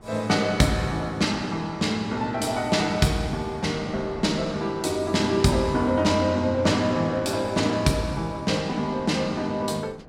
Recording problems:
wind on the microphone; below 620 Hz, SNR 22 dB

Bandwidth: 16.5 kHz